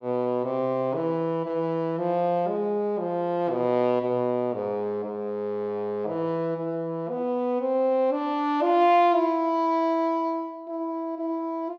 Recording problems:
none

